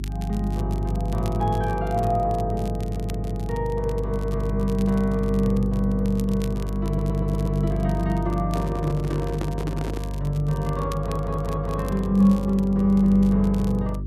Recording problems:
hum; 50 Hz, harmonics up to 400 Hz, SNR 5 dB
crackling; vinyl, SNR 23 dB
audio stuttering; at 3 s, at 7 s and at 11 s
microphone handling noise; from 8.5 to 10 s; peak -3 dB vs average level

